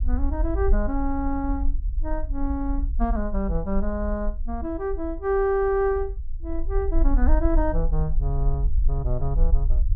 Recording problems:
rumble; below 50 Hz, SNR 1 dB

